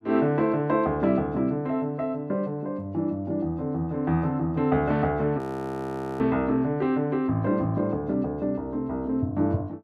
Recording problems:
audio freezing; at 5.5 s for 1 s

